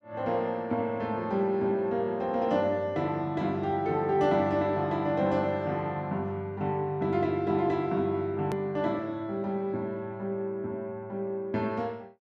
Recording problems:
edit click; at 8.5 s

